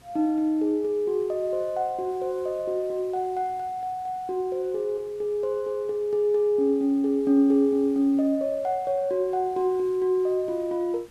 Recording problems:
hiss; slope -3 dB per octave, SNR 28 dB

